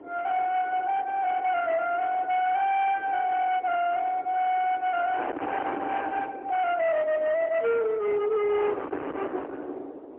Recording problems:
phone line; 800 Hz to 3.1 kHz, AMR-NB, then MP3
distorted audio; hard clipping, signal-to-distortion ratio 6 dB
wind noise; below 810 Hz, SNR 11 dB

